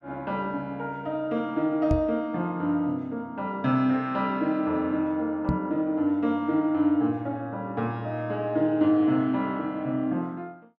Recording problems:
knock on the microphone; at 2 s and at 5.5 s; peak +4 dB vs average level

